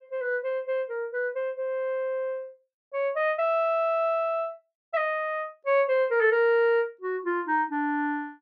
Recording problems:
none

